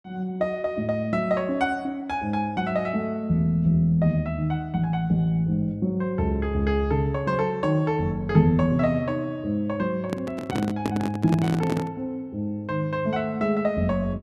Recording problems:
microphone handling noise; from 10 to 12 s; peak +1 dB vs average level

